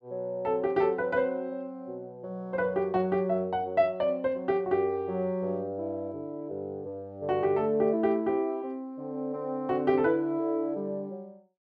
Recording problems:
none

